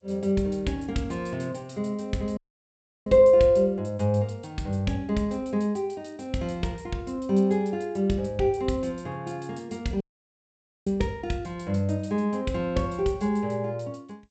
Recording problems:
lossy compression; G.722, log-spectral distance 2 dB, nothing above 7.6 kHz
dropout; at 2.5 s for 0.5 s and at 10 s for 1 s

